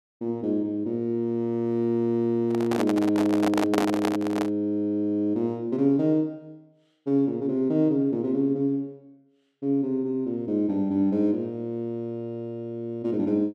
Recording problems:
handling noise; from 2.5 to 4.5 s; peak +4 dB vs average level

